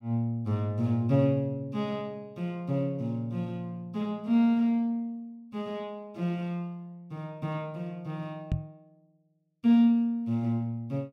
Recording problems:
microphone thump; at 8.5 s; peak +3 dB vs average level

